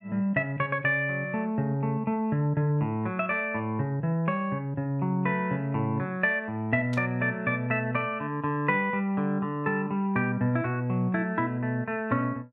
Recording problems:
static burst; at 7 s; peak -11 dB vs average level

